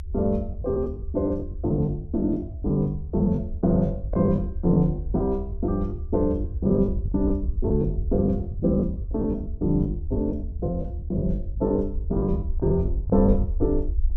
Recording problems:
low-frequency rumble; below 78 Hz, SNR 6 dB
lost packets; 16% of the sound replaced, filled with the last packet

